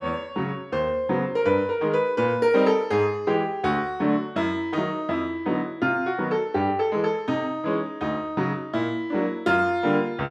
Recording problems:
none

